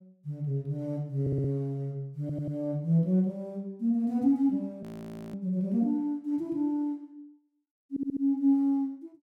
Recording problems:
audio stuttering; at 1 s, at 2 s and at 8 s
frozen audio; at 5 s for 0.5 s

